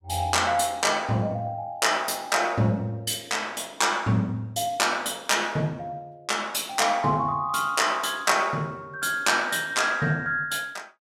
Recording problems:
none

